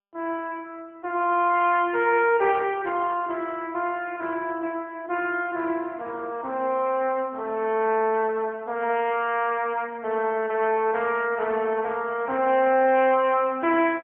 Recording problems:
telephone audio; 240 Hz to 3.3 kHz, AMR-NB

